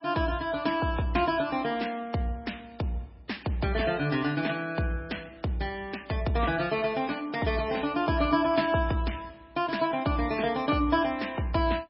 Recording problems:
lossy compression; MP3, log-spectral distance 4 dB, nothing above 5.3 kHz

